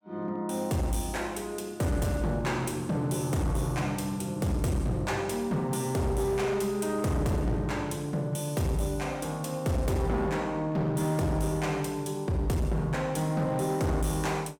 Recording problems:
distortion; hard clipping, signal-to-distortion ratio 10 dB

